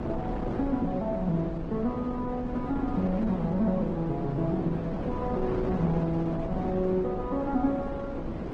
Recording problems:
codec artefacts; MP3, then Opus, log-spectral distance 2 dB
wind noise; below 450 Hz, SNR 5 dB

